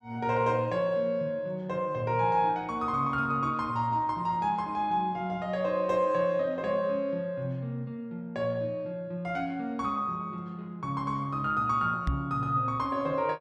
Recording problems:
microphone thump; at 12 s; peak +3 dB vs average level

